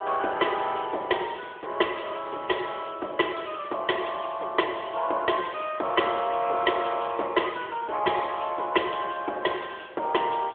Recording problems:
phone line; 300 Hz to 3.5 kHz, AMR-NB

